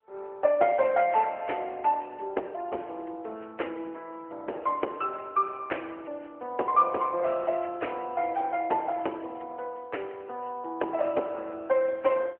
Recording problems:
telephone audio; 320 Hz to 3.1 kHz, AMR-NB

